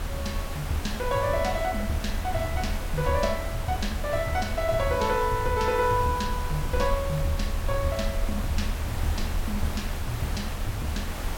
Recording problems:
background hiss; slope -4 dB per octave, SNR 8 dB
low-frequency rumble; below 78 Hz, SNR 5 dB

